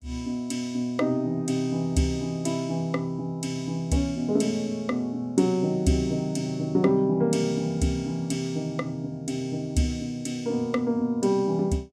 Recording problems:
none

